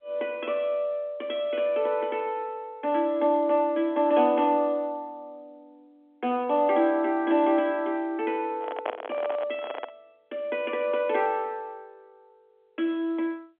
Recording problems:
phone line; 220 Hz to 3.4 kHz, G.711
handling noise; from 8.5 to 10 s; peak 0 dB vs average level

